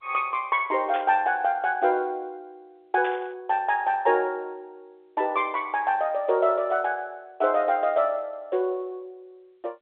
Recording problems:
telephone audio; 320 Hz to 3.7 kHz, G.711
static burst; at 1 s and at 3 s; peak -8 dB vs average level

